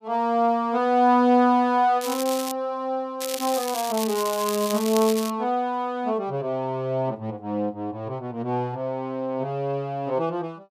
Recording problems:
crackle; at 2 s and from 3 to 5.5 s; loose cable, SNR 9 dB

